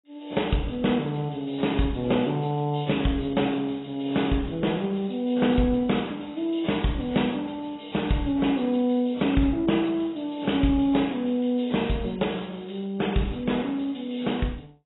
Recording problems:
codec artefacts; AAC, log-spectral distance 8 dB, nothing above 3.8 kHz

